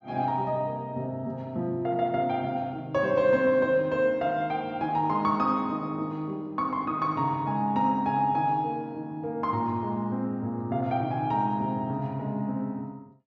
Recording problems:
low-pass filter; nothing above 8 kHz

